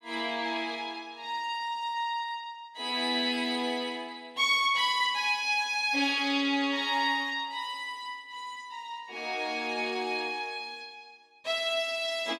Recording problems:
none

